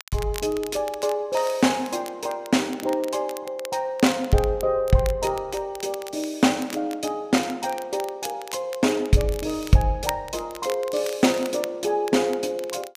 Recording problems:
crackling; vinyl, SNR 16 dB

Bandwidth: 15 kHz